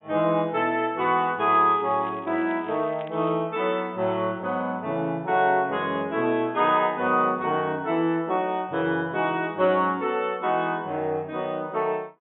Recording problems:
treble missing; nothing above 3.6 kHz
crackling; from 1.5 to 3.5 s; loose cable, SNR 27 dB

